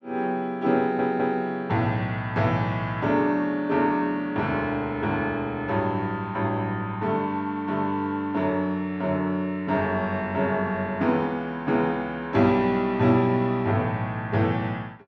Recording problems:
stutter; at 1 s

